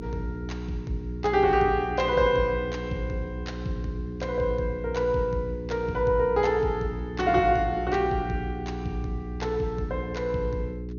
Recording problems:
low-pass filter; nothing above 6.7 kHz
hum; 60 Hz, harmonics up to 420 Hz, SNR 8 dB

